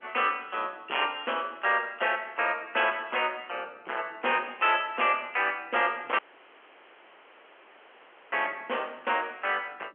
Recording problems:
phone line; 320 Hz to 3.3 kHz, G.711
distortion; hard clipping, signal-to-distortion ratio 11 dB
wind on the microphone; below 2.4 kHz, SNR 22 dB
audio cutting out; at 6 s for 2 s

